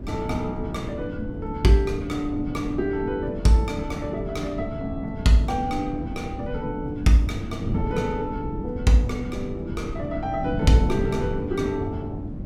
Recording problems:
wind noise; below 230 Hz, SNR 6 dB

